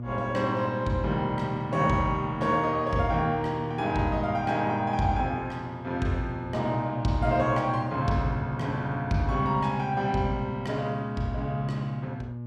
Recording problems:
hum; 60 Hz, harmonics up to 600 Hz, SNR 10 dB

